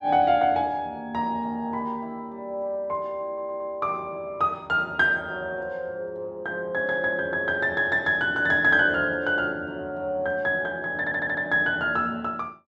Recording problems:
audio stuttering; at 3.5 s and at 11 s

